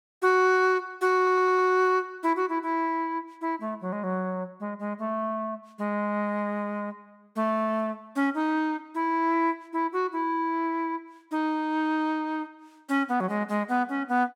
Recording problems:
audio stuttering; at 1 s

